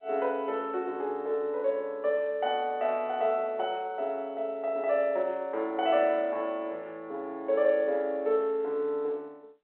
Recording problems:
telephone audio; 300 Hz to 3.8 kHz, G.711

